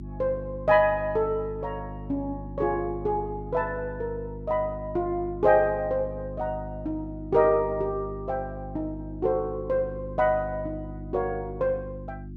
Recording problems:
electrical hum; 50 Hz, harmonics up to 350 Hz, SNR 12 dB

